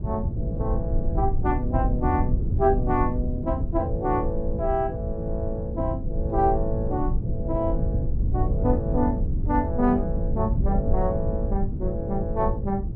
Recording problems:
low-frequency rumble; below 110 Hz, SNR 1 dB

